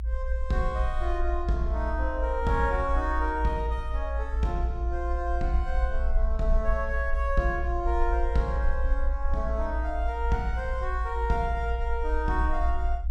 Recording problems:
low-frequency rumble; below 58 Hz, SNR 0 dB

